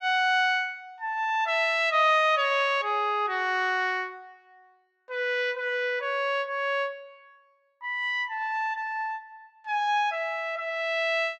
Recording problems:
none

